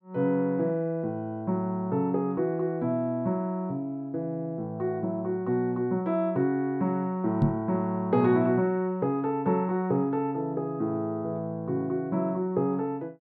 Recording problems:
microphone thump; at 7.5 s; peak +7 dB vs average level

